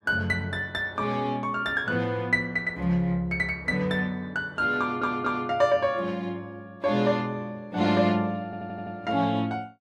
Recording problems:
stutter; at 5 s and at 8.5 s

